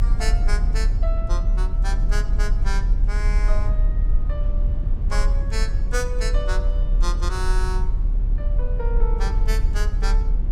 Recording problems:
rumble; below 42 Hz, strongest tone 36 Hz, SNR -9 dB

